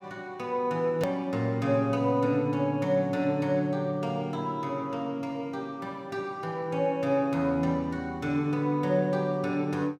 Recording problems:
click at an edit; at 1 s

